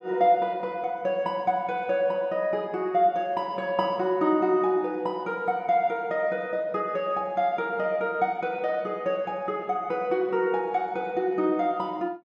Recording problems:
none

